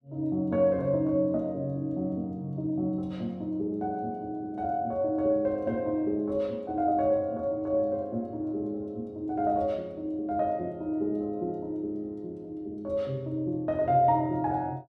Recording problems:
none

